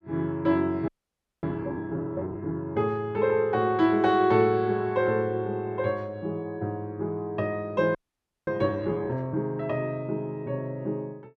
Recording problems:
audio freezing; at 1 s for 0.5 s and at 8 s for 0.5 s

